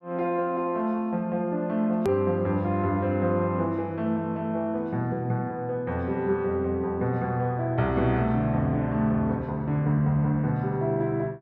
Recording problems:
click at an edit; at 2 s

